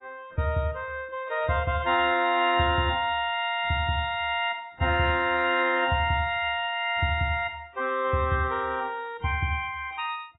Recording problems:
codec artefacts; AAC, log-spectral distance 3 dB, nothing above 3.8 kHz

